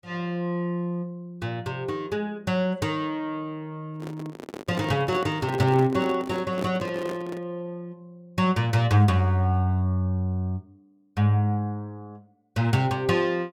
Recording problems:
microphone handling noise; from 4 to 7.5 s; peak -3 dB vs average level

